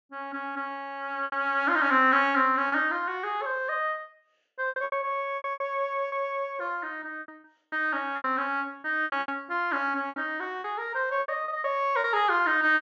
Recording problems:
treble missing; nothing above 7.5 kHz
lost packets; 10% of the sound replaced, filled with repeated pitch periods

